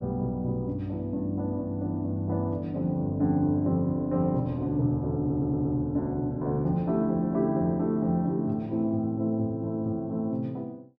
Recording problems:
stutter; at 5 s

